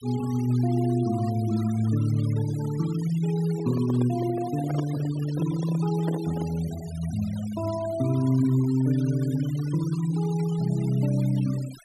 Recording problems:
noise reduction artefacts; signal-to-artefact ratio 19 dB
microphone handling noise; from 3.5 to 6.5 s; peak -3 dB vs average level

